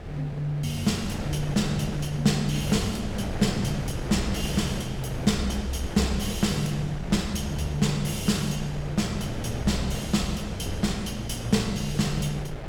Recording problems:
wind on the microphone; below 490 Hz, SNR 7 dB

